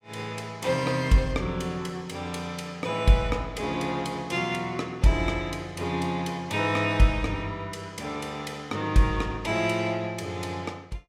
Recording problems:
none

